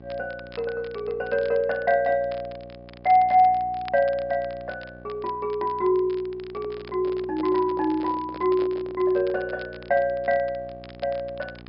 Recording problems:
treble missing; nothing above 5.5 kHz
electrical hum; 60 Hz, harmonics up to 1.1 kHz, SNR 21 dB
crackling; vinyl, SNR 24 dB
microphone handling noise; from 6.5 to 9.5 s; peak -9 dB vs average level

